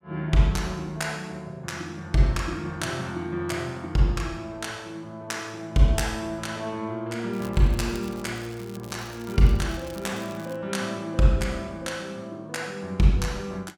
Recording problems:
crackle; from 7.5 to 11 s; loose cable, SNR 21 dB

